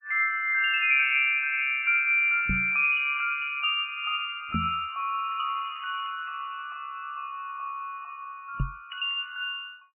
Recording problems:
lossy compression; MP3, log-spectral distance 3 dB, nothing above 2.4 kHz
microphone bump; at 2.5 s, at 4.5 s and at 8.5 s; peak 0 dB vs average level

